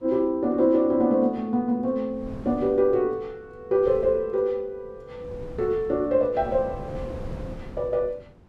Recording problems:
wind noise; below 280 Hz, SNR 17 dB

